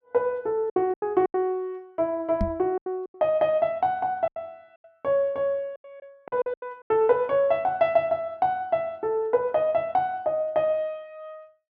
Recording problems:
lost packets; 7% of the sound replaced, filled with silence
microphone thump; at 2.5 s; peak +2 dB vs average level

